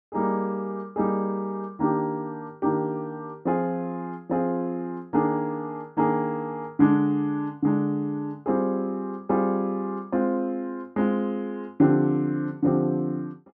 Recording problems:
none

